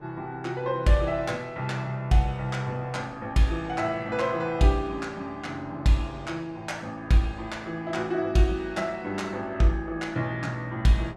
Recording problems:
wind on the microphone; below 800 Hz, SNR 25 dB

